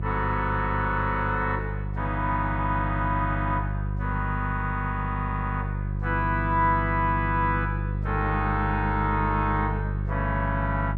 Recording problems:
electrical hum; 50 Hz, harmonics up to 400 Hz, SNR 2 dB

